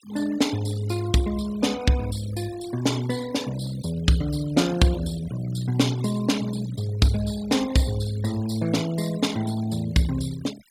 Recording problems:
noise reduction artefacts; signal-to-artefact ratio 16 dB

